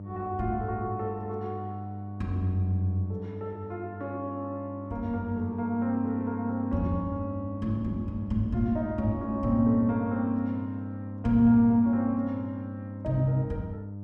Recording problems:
hum; 50 Hz, harmonics up to 600 Hz, SNR 10 dB

